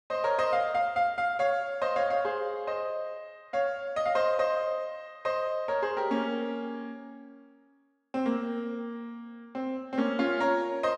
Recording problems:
none

